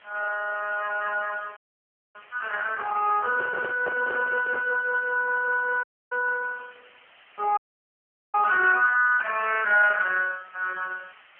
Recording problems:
telephone audio; 240 Hz to 3.1 kHz, AMR-NB
background hiss; SNR 28 dB
audio cutting out; at 1.5 s for 0.5 s, at 6 s and at 7.5 s for 1 s
handling noise; from 3 to 4.5 s; peak -3 dB vs average level

